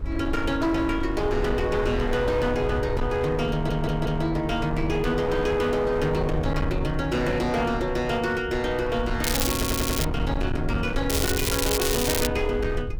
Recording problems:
distorted audio; hard clipping, signal-to-distortion ratio 10 dB
low-frequency rumble; below 100 Hz, SNR 7 dB
wind on the microphone; below 470 Hz, SNR 20 dB
audio stuttering; at 3.5 s and at 9.5 s
crackling; at 9 s and from 11 to 12 s; loose cable, SNR 2 dB

